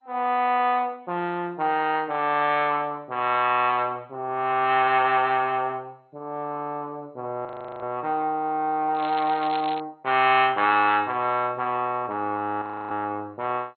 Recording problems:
lossy compression; MP2, log-spectral distance 2 dB, nothing above 4.1 kHz
audio freezing; at 7.5 s and at 13 s
crackling; at 9 s; loose cable, SNR 16 dB

